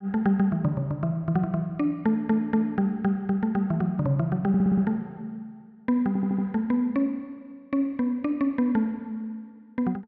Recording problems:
stutter; at 2 s, at 4.5 s and at 6 s

